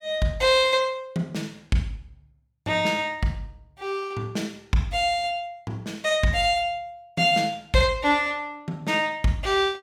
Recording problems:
none

